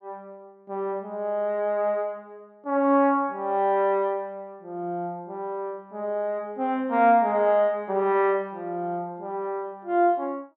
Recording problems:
none

